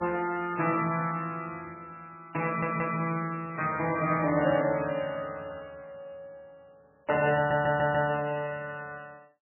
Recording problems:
lossy codec; MP3, log-spectral distance 3 dB, nothing above 2.4 kHz
stutter; at 2.5 s and at 7.5 s

